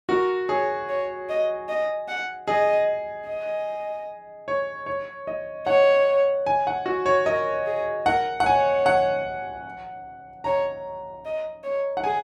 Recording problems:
none

